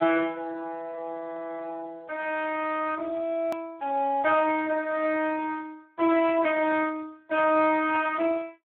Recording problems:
telephone audio; 300 Hz to 3.4 kHz, Speex
hard cut with a click; at 3.5 s

